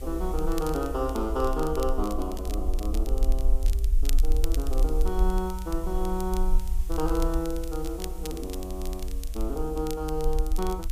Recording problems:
background hiss; slope +3 dB per octave, SNR 19 dB
rumble; below 46 Hz, strongest tone 22 Hz, SNR 0 dB
crackling; vinyl, SNR 13 dB

